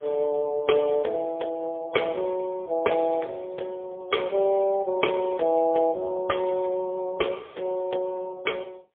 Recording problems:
telephone audio; 340 Hz to 2.7 kHz, AMR-NB, then MP3

